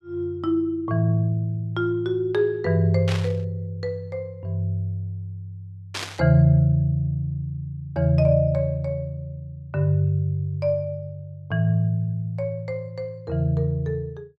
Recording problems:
burst of static; at 3 s and at 6 s; peak -2 dB vs average level

